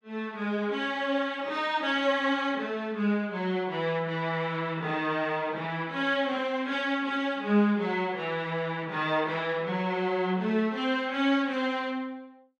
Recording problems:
none

